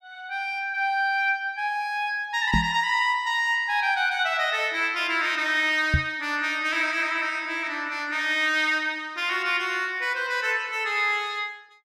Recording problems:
microphone thump; at 2.5 s and at 6 s; peak +5 dB vs average level

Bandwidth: 14.5 kHz